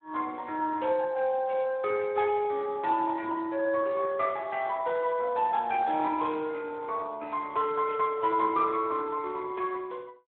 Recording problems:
phone line; 300 Hz to 3.6 kHz, Speex

